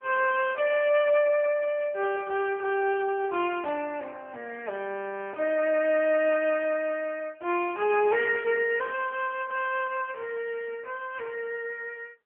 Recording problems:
telephone audio; 260 Hz to 3.1 kHz, AMR-NB

